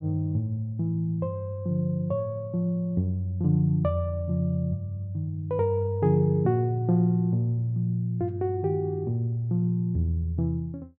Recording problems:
none

